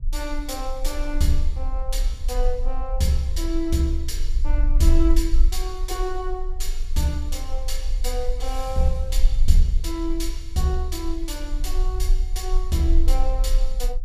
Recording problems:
low-frequency rumble; below 40 Hz, strongest tone 20 Hz, SNR -1 dB

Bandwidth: 15.5 kHz